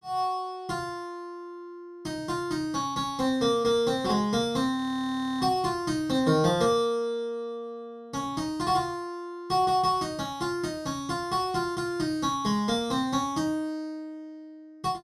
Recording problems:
audio freezing; at 5 s for 0.5 s

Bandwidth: 14.5 kHz